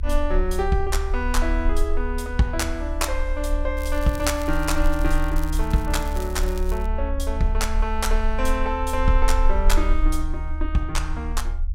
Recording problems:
low-frequency rumble; below 42 Hz, SNR 1 dB
crackle; from 4 to 7 s; loose cable, SNR 17 dB

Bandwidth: 16 kHz